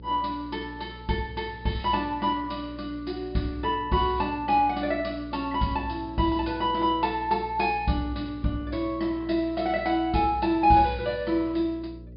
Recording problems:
low-pass filter; nothing above 5.1 kHz
electrical hum; 60 Hz, harmonics up to 540 Hz, SNR 17 dB

